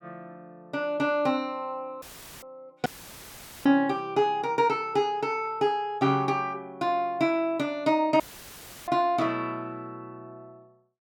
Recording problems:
audio cutting out; at 2 s, at 3 s for 1 s and at 8 s for 0.5 s; filled with static

